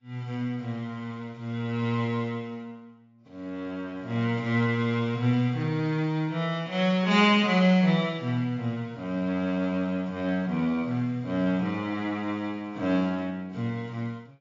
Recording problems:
lossy compression; AAC, log-spectral distance 2 dB, nothing above 6.9 kHz

